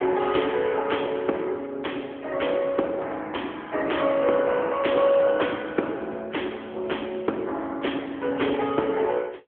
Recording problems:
phone line; 260 Hz to 3.4 kHz, AMR-NB

